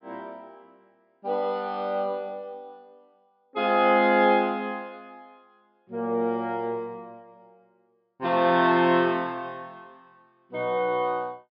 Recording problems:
treble cut off; nothing above 5.5 kHz

